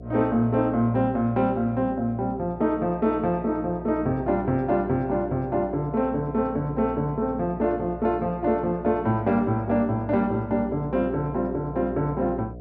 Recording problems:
hum; 60 Hz, harmonics up to 720 Hz, SNR 15 dB

